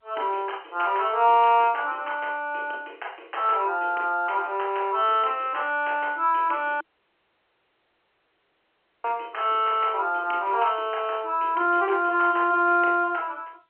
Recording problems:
phone line; 300 Hz to 3.2 kHz, G.711
audio cutting out; at 7 s for 2 s

